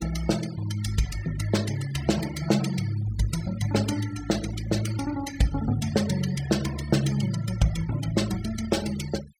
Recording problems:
denoising artefacts; signal-to-artefact ratio 13 dB

